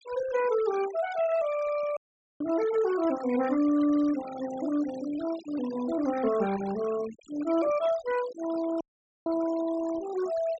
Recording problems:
low-pass filter; nothing above 8 kHz
noise reduction artefacts; signal-to-artefact ratio 16 dB
audio cutting out; at 2 s and at 9 s

